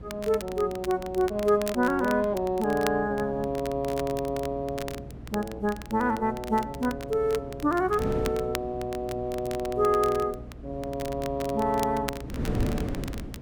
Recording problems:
hum; 60 Hz, harmonics up to 720 Hz, SNR 19 dB
wind on the microphone; below 300 Hz, SNR 12 dB
crackling; vinyl, SNR 15 dB

